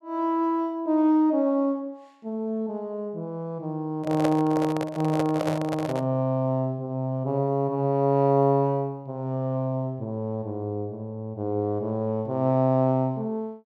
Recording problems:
handling noise; from 4 to 6 s; peak +2 dB vs average level

